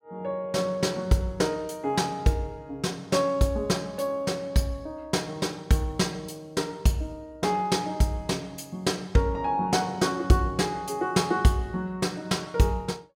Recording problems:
none

